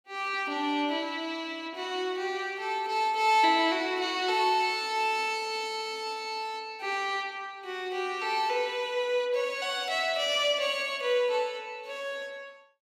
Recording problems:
none

